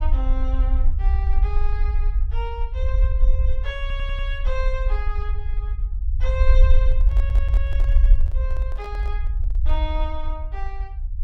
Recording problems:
rumble; below 54 Hz, SNR -11 dB
stutter; at 4 s and at 7 s
handling noise; from 7 to 10 s; peak -3 dB vs average level

